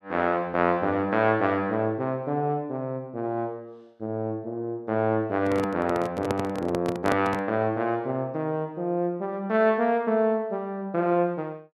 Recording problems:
handling noise; from 5.5 to 7.5 s; peak +2 dB vs average level

